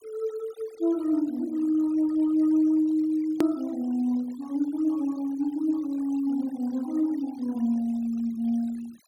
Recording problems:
denoising artefacts; signal-to-artefact ratio 24 dB
click at an edit; at 3.5 s

